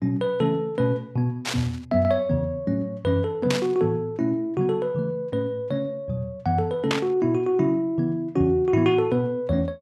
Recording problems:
burst of static; at 1.5 s, at 3.5 s and at 7 s; peak +3 dB vs average level

